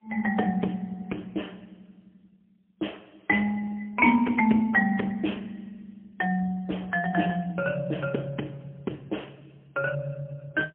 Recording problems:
telephone audio; 170 Hz to 3.2 kHz, AMR-NB, then MP3

